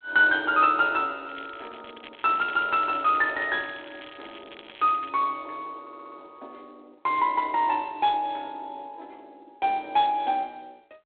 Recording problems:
telephone audio; 260 Hz to 4 kHz, G.726
crackle; from 1.5 to 5 s; loose cable, SNR 21 dB
audio stuttering; at 6 s

